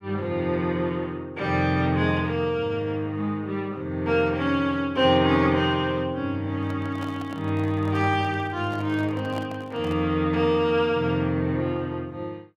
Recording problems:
microphone handling noise; from 6.5 to 10 s; peak -8 dB vs average level

